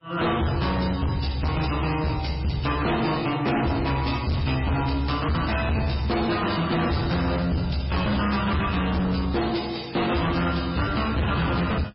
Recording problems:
lossy compression; MP3, log-spectral distance 6 dB, nothing above 5.3 kHz
distorted audio; hard clipping, uneven, signal-to-distortion ratio 6 dB

